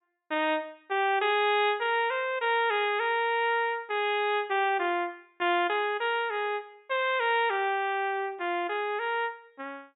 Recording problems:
treble cut off; nothing above 4 kHz

